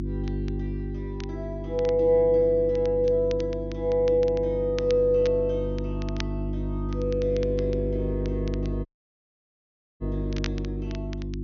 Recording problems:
treble missing; nothing above 6.5 kHz
hum; 50 Hz, harmonics up to 350 Hz, SNR 7 dB
crackle; vinyl, SNR 21 dB
audio cutting out; at 9 s for 1 s

